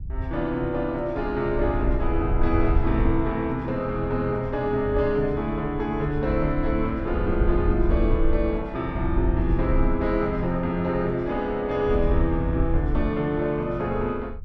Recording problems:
low-frequency rumble; below 70 Hz, SNR 5 dB

